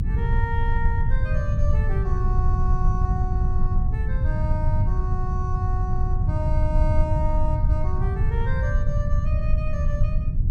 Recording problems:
low-frequency rumble; below 94 Hz, SNR -9 dB

